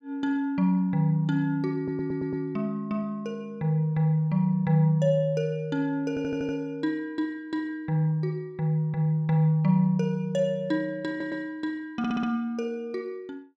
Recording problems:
stutter; 4 times, first at 2 s

